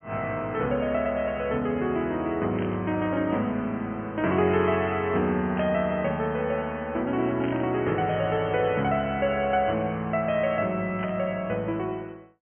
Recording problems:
treble cut off; nothing above 3.2 kHz
burst of static; 4 times, first at 2.5 s; peak -8 dB vs average level

